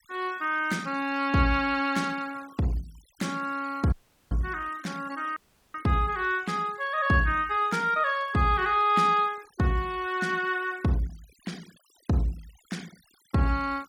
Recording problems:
denoising artefacts; signal-to-artefact ratio 24 dB
audio cutting out; at 4 s and at 5.5 s

